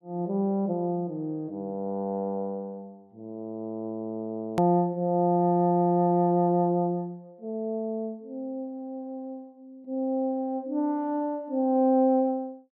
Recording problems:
hard cut with a click; at 4.5 s

